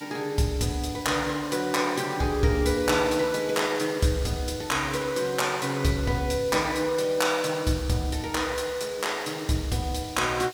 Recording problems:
background hiss; slope +4 dB per octave, SNR 18 dB

